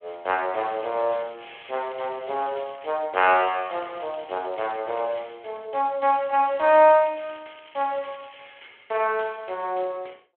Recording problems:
telephone audio; 340 Hz to 3.3 kHz, Speex
crackle; from 0.5 to 3 s, from 3.5 to 4.5 s and from 6 to 8.5 s; loose cable, SNR 25 dB

